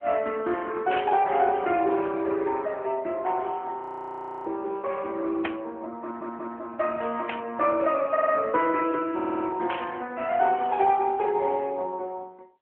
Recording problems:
telephone audio; 320 Hz to 3.3 kHz, AMR-NB
burst of static; 4 times, first at 1 s; peak -1 dB vs average level
frozen audio; at 4 s for 0.5 s
audio stuttering; at 6 s, at 8 s and at 9 s

